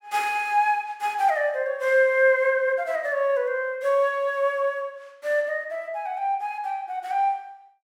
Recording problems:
none

